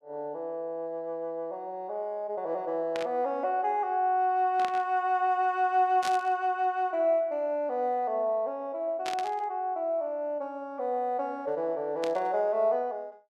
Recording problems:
static burst; 5 times, first at 3 s; peak -4 dB vs average level

